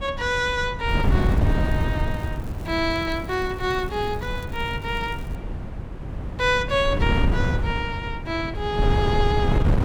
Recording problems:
wind noise; below 170 Hz, SNR 1 dB
crackling; from 1 to 5.5 s; loose cable, SNR 25 dB

